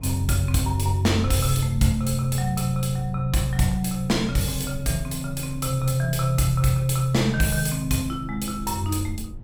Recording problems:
electrical hum; 60 Hz, harmonics up to 960 Hz, SNR 27 dB
rumble; below 86 Hz, SNR 15 dB

